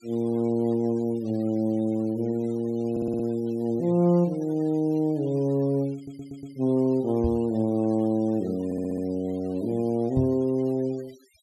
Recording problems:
noise reduction artefacts; signal-to-artefact ratio 27 dB
audio stuttering; at 3 s, at 6 s and at 8.5 s
microphone thump; at 7 s and at 10 s; peak +1 dB vs average level

